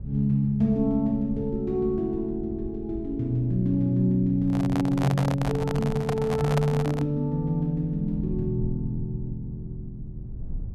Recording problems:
rumble; below 98 Hz, SNR 15 dB
microphone handling noise; from 4.5 to 7 s; peak +1 dB vs average level

